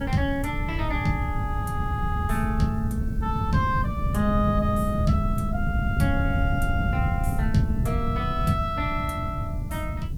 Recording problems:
hiss; SNR 28 dB
wind on the microphone; below 140 Hz, SNR 0 dB

